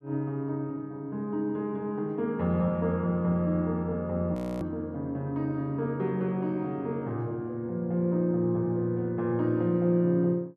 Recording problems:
frozen audio; at 4.5 s

